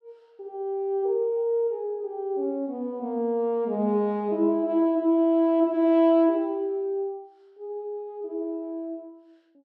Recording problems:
none

